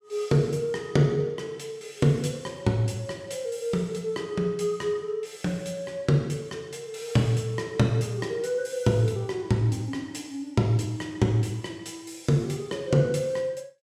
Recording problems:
none

